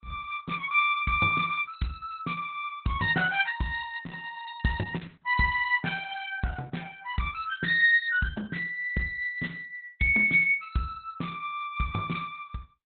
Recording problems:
lossy compression; Opus, log-spectral distance 4 dB, nothing above 4 kHz

